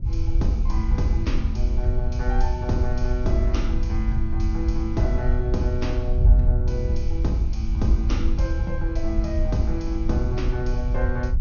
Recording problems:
treble cut off; nothing above 6.6 kHz
wind noise; below 68 Hz, SNR -3 dB

